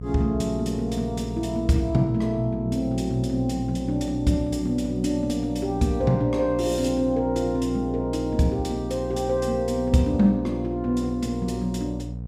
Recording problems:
hum; 60 Hz, harmonics up to 480 Hz, SNR 9 dB

